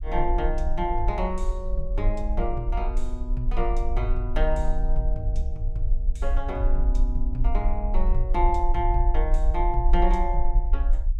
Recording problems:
rumble; below 44 Hz, strongest tone 22 Hz, SNR -3 dB

